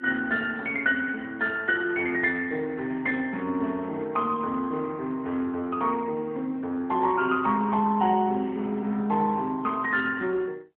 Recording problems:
telephone audio; 170 Hz to 3.6 kHz, AMR-NB

